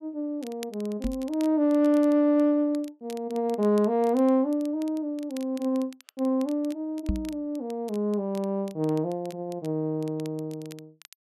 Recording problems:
crackling; vinyl, SNR 24 dB
knock on the microphone; at 1 s and at 7 s; peak +3 dB vs average level

